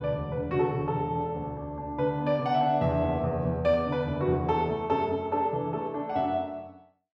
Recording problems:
none

